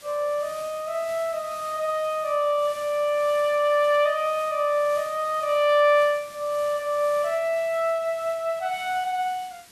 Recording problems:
background hiss; slope 0 dB per octave, SNR 21 dB

